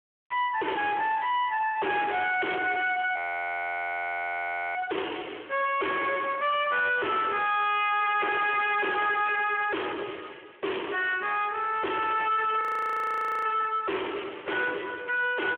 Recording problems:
telephone audio; 340 Hz to 3.3 kHz, Speex
distortion; soft clipping, signal-to-distortion ratio 5 dB
frozen audio; at 3 s for 1.5 s and at 13 s for 1 s

